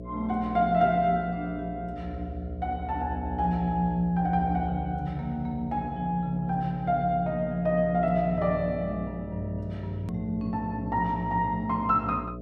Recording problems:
hum; 60 Hz, harmonics up to 660 Hz, SNR 10 dB
click at an edit; at 10 s

